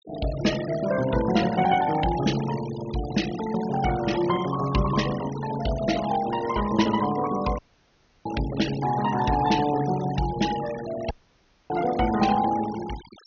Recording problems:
treble cut off; nothing above 6.5 kHz
noise reduction artefacts; signal-to-artefact ratio 13 dB
dropout; at 7.5 s for 0.5 s and at 11 s for 0.5 s

